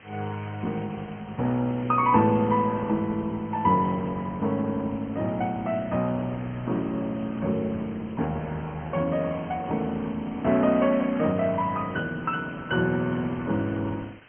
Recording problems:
treble missing; nothing above 2.7 kHz
lossy codec; Opus, log-spectral distance 5 dB
hiss; SNR 24 dB

